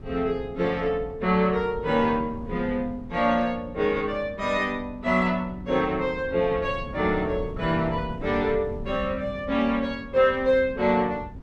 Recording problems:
wind on the microphone; below 190 Hz, SNR 15 dB

